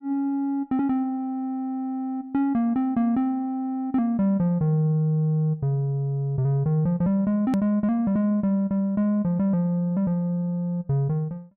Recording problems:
edit click; at 7.5 s

